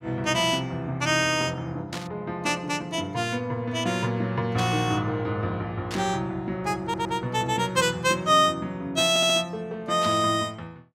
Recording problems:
burst of static; 4 times, first at 2 s; peak -4 dB vs average level
audio stuttering; at 7 s and at 9 s

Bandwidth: 16.5 kHz